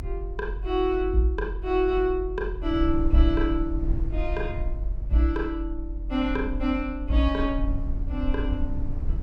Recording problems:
rumble; below 56 Hz, SNR 5 dB

